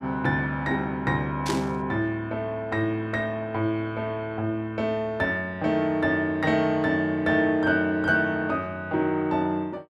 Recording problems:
static burst; at 1.5 s; peak -2 dB vs average level

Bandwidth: 13.5 kHz